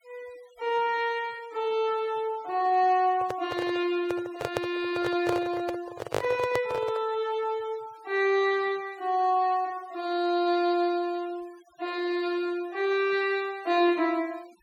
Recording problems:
denoising artefacts; signal-to-artefact ratio 24 dB
handling noise; from 3 to 7 s; peak +3 dB vs average level

